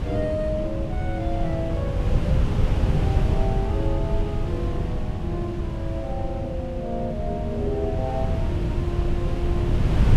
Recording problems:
wind noise; below 150 Hz, SNR -5 dB

